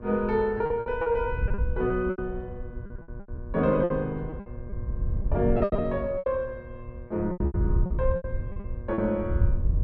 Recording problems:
electrical hum; 60 Hz, harmonics up to 1.6 kHz, SNR 18 dB
wind on the microphone; below 80 Hz, SNR 5 dB
lost packets; 14% of the sound replaced, filled with repeated pitch periods

